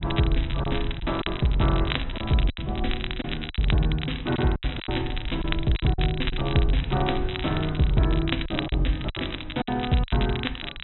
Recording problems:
treble cut off; nothing above 3.9 kHz
low-frequency rumble; below 72 Hz, SNR 10 dB
crackle; vinyl, SNR 8 dB
lost packets; 8% of the sound replaced, filled with silence

